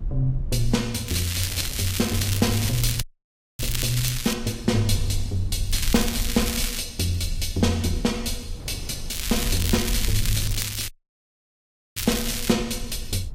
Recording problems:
lossy compression; Vorbis, log-spectral distance 5 dB, nothing above 14.7 kHz
rumble; below 52 Hz, SNR 9 dB
wind noise; below 160 Hz, SNR 16 dB
crackle; from 1 to 4.5 s, from 5.5 to 7 s and from 9 to 13 s; loose cable, SNR 3 dB
audio cutting out; at 3 s for 0.5 s and at 11 s for 1 s

